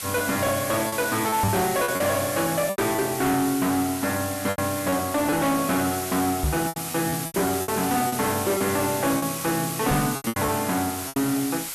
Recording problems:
distorted audio; hard clipping, signal-to-distortion ratio 10 dB
background hiss; slope +2 dB per octave, SNR 6 dB
packet loss; 9% of the sound replaced, filled with repeated pitch periods
microphone bump; at 1.5 s, at 6.5 s and at 10 s; peak +4 dB vs average level

